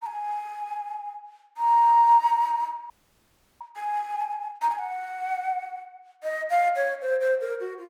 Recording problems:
audio freezing; at 3 s for 0.5 s

